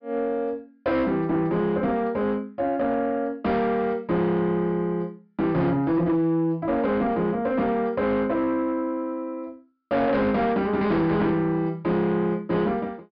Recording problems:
treble cut off; nothing above 5.5 kHz
distorted audio; soft clipping, signal-to-distortion ratio 11 dB

